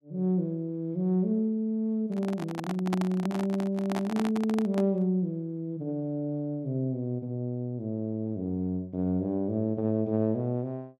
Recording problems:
handling noise; from 2 to 5 s; peak +1 dB vs average level

